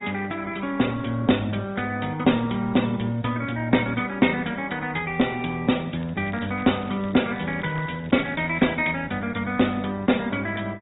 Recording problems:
low-pass filter; nothing above 3.8 kHz
codec artefacts; Opus, log-spectral distance 6 dB
crackling; from 6 to 8.5 s; loose cable, SNR 27 dB

